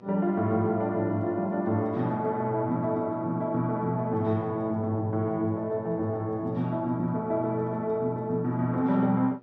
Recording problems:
electrical hum; 60 Hz, harmonics up to 1.9 kHz, SNR 27 dB

